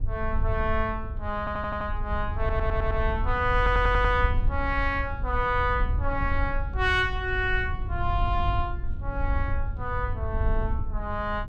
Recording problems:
rumble; below 80 Hz, SNR 3 dB
stutter; at 1.5 s, at 2.5 s and at 3.5 s

